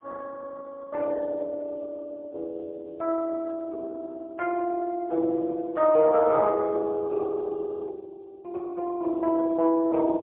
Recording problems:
phone line; 340 Hz to 2.1 kHz, AMR-NB, then MP3

